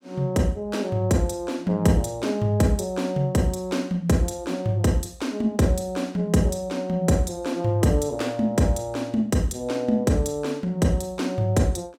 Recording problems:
none

